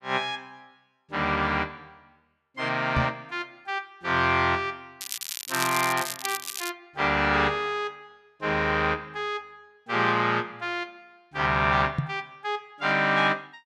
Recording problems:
microphone bump; at 3 s and at 12 s; peak +3 dB vs average level
crackling; from 5 to 6.5 s; loose cable, SNR 6 dB

